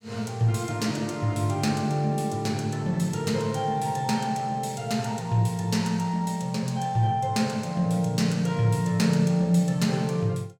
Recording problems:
none

